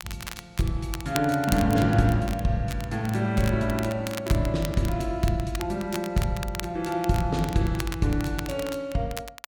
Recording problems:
crackle; vinyl, SNR 13 dB

